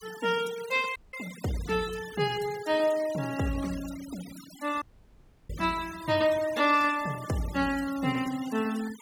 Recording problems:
noise reduction artefacts; signal-to-artefact ratio 16 dB
audio cutting out; at 1 s and at 5 s for 0.5 s

